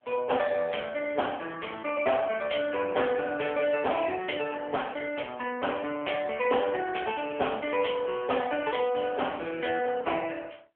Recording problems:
phone line; 320 Hz to 3.4 kHz, AMR-NB

